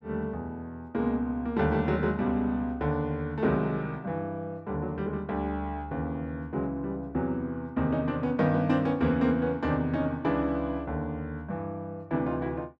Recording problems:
none

